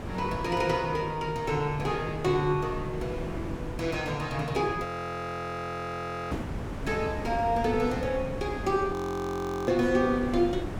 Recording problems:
wind noise; below 430 Hz, SNR 8 dB
audio freezing; at 5 s for 1.5 s and at 9 s for 1 s

